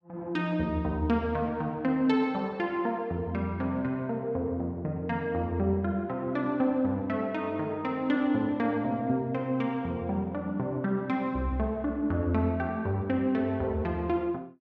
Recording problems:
none

